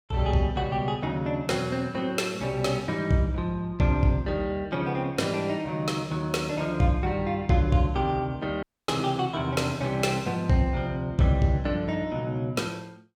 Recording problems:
dropout; at 8.5 s

